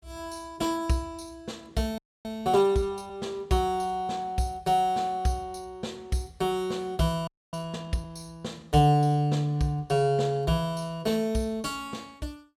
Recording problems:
frozen audio; at 2 s and at 7.5 s

